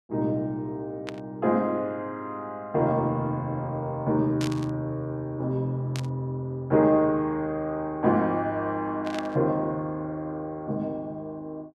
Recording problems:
static burst; 4 times, first at 1 s; peak -4 dB vs average level

